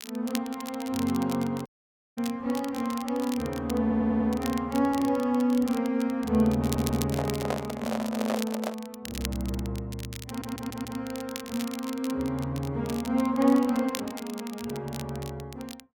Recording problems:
crackle; vinyl, SNR 14 dB
dropout; at 1.5 s for 0.5 s
audio stuttering; at 4 s, at 6.5 s and at 10 s
microphone handling noise; from 7 to 9 s; peak +2 dB vs average level

